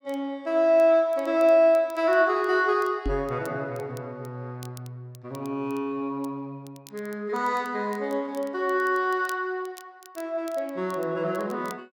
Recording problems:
crackle; vinyl, SNR 27 dB
knock on the microphone; at 3 s; peak -2 dB vs average level

